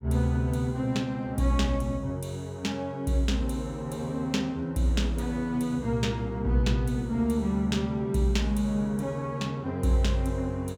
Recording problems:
none

